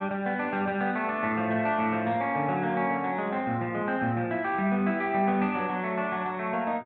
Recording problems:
none

